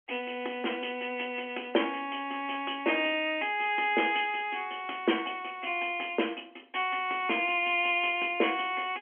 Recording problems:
telephone audio; 240 Hz to 3.3 kHz, G.711

